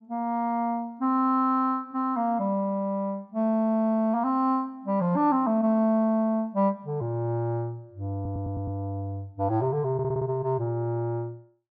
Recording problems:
stutter; at 8 s and at 10 s

